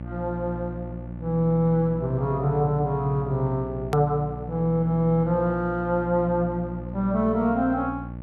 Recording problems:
hum; 60 Hz, harmonics up to 900 Hz, SNR 11 dB
hard cut with a click; at 4 s

